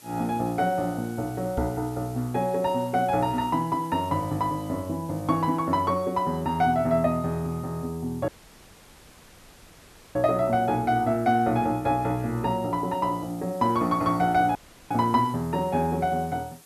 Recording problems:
hiss; slope -1 dB per octave, SNR 24 dB
microphone thump; at 1.5 s; peak -1 dB vs average level
dropout; at 8.5 s for 2 s and at 15 s

